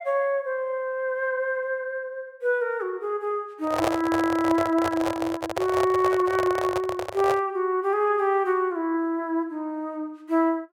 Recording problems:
handling noise; from 3.5 to 7.5 s; peak +4 dB vs average level

